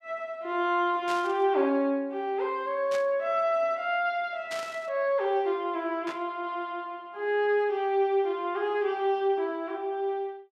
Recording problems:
static burst; 4 times, first at 1 s; peak -6 dB vs average level

